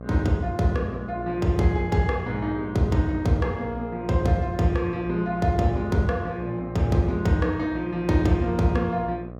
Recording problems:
electrical hum; 60 Hz, harmonics up to 1.3 kHz, SNR 14 dB

